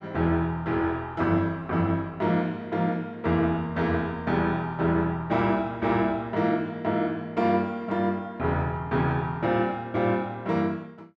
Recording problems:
none

